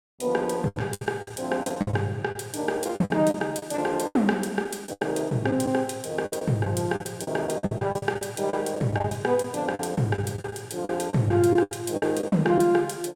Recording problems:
lost packets; 14% of the sound replaced, filled with the last packet

